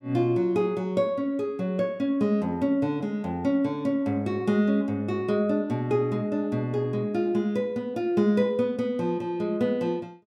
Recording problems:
none

